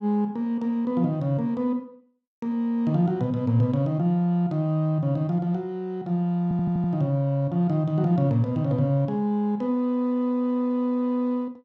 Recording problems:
audio stuttering; at 6.5 s

